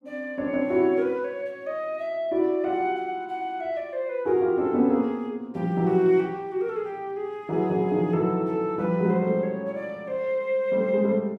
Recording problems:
none

